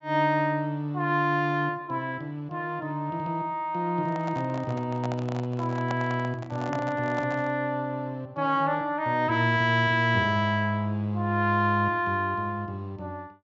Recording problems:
treble cut off; nothing above 8 kHz
microphone handling noise; from 4 to 7.5 s; peak -3 dB vs average level

